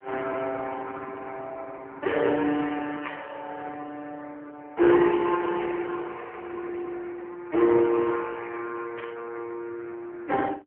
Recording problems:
phone line; 260 Hz to 3.2 kHz, AMR-NB
burst of static; at 3 s and at 9 s; peak -7 dB vs average level

